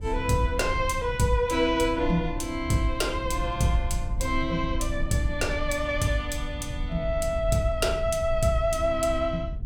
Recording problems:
wind noise; below 82 Hz, SNR 8 dB

